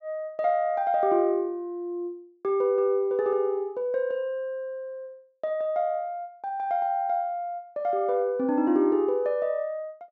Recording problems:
low-pass filter; nothing above 8 kHz

